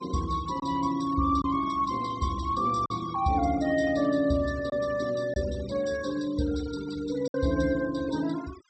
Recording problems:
treble cut off; nothing above 8 kHz
noise reduction artefacts; signal-to-artefact ratio 18 dB
lost packets; 2% of the sound replaced, filled with silence

